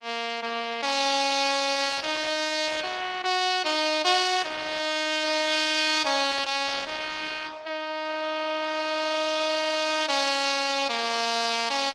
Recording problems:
lossy compression; Opus, log-spectral distance 6 dB, nothing above 16.6 kHz

